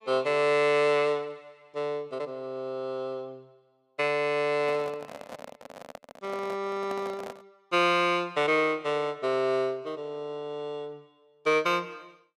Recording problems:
microphone handling noise; from 4.5 to 7.5 s; peak -8 dB vs average level

